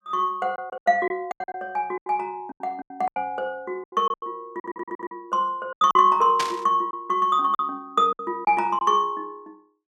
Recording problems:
lost packets; 12% of the sound replaced, filled with silence
audio stuttering; at 4.5 s
static burst; at 6.5 s; peak +1 dB vs average level

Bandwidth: 15 kHz